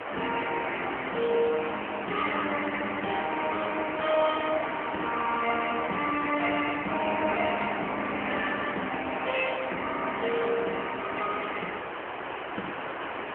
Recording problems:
phone line; 260 Hz to 3.1 kHz, AMR-NB
hiss; SNR 6 dB

